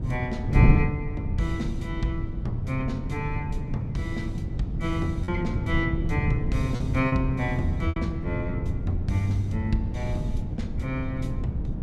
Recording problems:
wind on the microphone; below 150 Hz, SNR -1 dB
lost packets; 1.7% of the sound replaced, filled with repeated pitch periods

